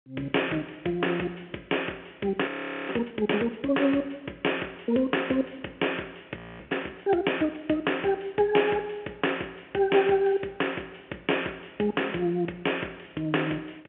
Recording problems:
telephone audio; 280 Hz to 3.3 kHz, G.711
audio freezing; at 2.5 s and at 6.5 s

